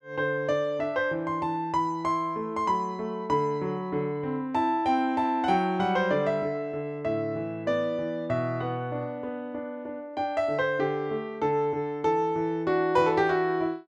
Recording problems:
none

